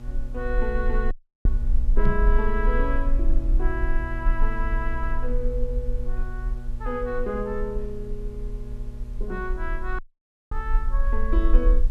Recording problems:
electrical hum; 60 Hz, harmonics up to 1.1 kHz, SNR 9 dB
hiss; slope -3 dB per octave, SNR 28 dB
low-frequency rumble; below 42 Hz, strongest tone 22 Hz, SNR -3 dB
audio cutting out; at 1 s and at 10 s for 0.5 s
microphone bump; at 2 s; peak +6 dB vs average level

